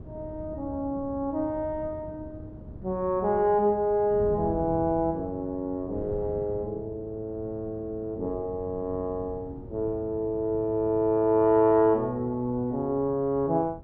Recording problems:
wind noise; below 240 Hz, SNR 16 dB

